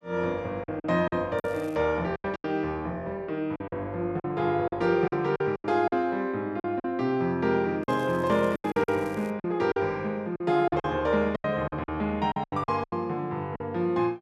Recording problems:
lost packets; 11% of the sound replaced, filled with silence
crackle; at 1.5 s and from 8 to 9.5 s; loose cable, SNR 27 dB

